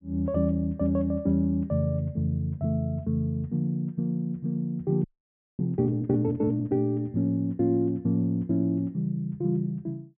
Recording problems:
treble cut off; nothing above 3.5 kHz
audio freezing; at 5 s for 0.5 s

